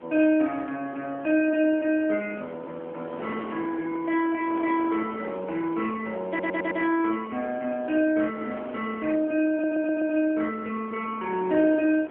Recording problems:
phone line; 240 Hz to 3.3 kHz, AMR-NB
wind on the microphone; below 860 Hz, SNR 15 dB
stutter; at 6.5 s and at 9.5 s

